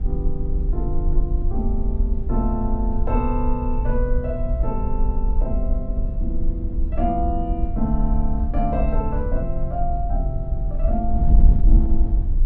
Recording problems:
wind on the microphone; below 54 Hz, SNR -4 dB

